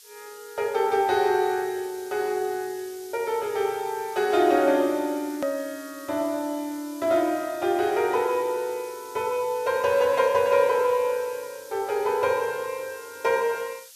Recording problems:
background hiss; slope +5 dB per octave, SNR 20 dB
click at an edit; at 5.5 s

